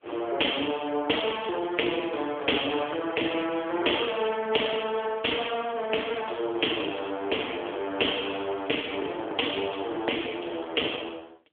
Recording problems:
telephone audio; 280 Hz to 3.5 kHz, AMR-NB
crackle; at 2 s, from 6 to 8.5 s and from 9.5 to 11 s; loose cable, SNR 23 dB

